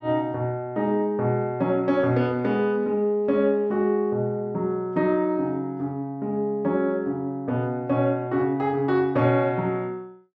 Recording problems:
none

